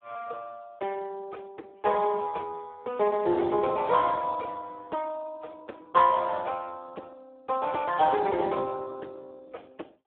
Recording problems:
phone line; 260 Hz to 2.1 kHz, Speex

